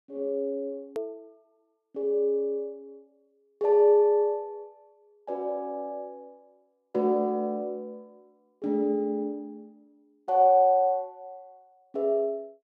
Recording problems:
edit click; at 1 s

